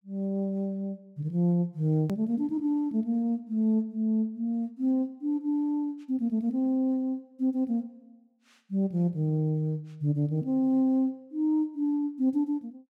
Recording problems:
hard cut with a click; at 2 s

